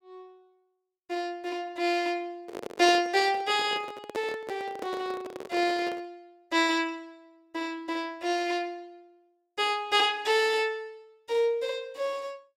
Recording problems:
handling noise; from 2.5 to 6 s; peak -4 dB vs average level

